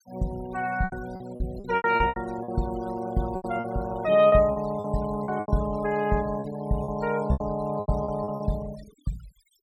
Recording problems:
noise reduction artefacts; signal-to-artefact ratio 20 dB
packet loss; 13% of the sound replaced, filled with repeated pitch periods

